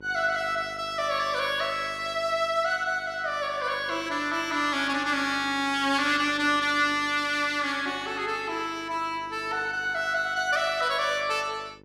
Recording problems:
electrical hum; 50 Hz, harmonics up to 1.6 kHz, SNR 24 dB

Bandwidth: 14.5 kHz